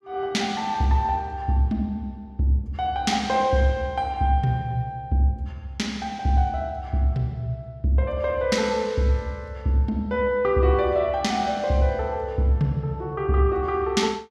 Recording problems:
none

